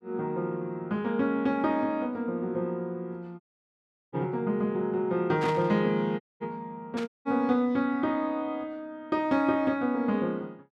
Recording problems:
audio cutting out; at 3.5 s for 0.5 s, at 6 s and at 7 s
static burst; at 5.5 s and at 7 s; peak -5 dB vs average level

